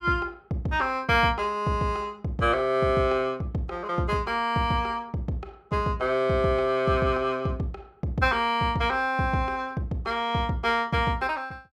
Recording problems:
none

